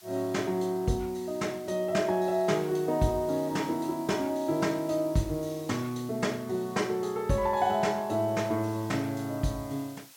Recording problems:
hiss; slope +2 dB per octave, SNR 21 dB

